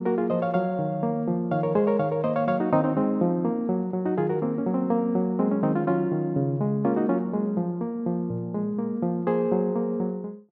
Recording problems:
none

